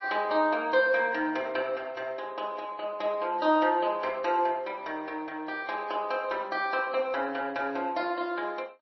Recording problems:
codec artefacts; MP3, log-spectral distance 2 dB, nothing above 5.7 kHz

